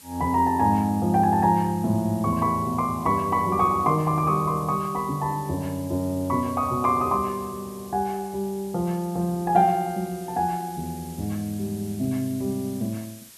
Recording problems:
hiss; slope +1 dB per octave, SNR 20 dB

